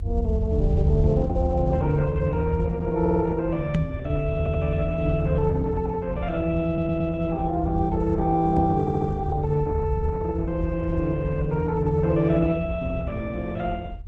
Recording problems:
lossy codec; Opus, log-spectral distance 2 dB
rumble; below 88 Hz, SNR 6 dB
stutter; 4 times, first at 3 s
knock on the microphone; at 4 s and at 8.5 s; peak +6 dB vs average level

